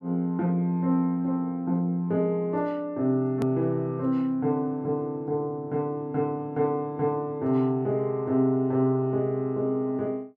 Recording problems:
edit click; at 3.5 s

